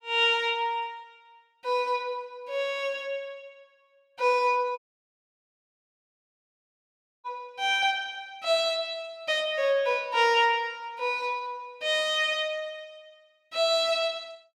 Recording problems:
audio cutting out; at 5 s for 2.5 s

